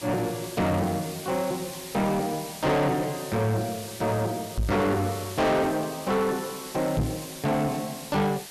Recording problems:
distorted audio; soft clipping, signal-to-distortion ratio 7 dB
background hiss; SNR 12 dB
knock on the microphone; at 4.5 s and at 7 s; peak +4 dB vs average level

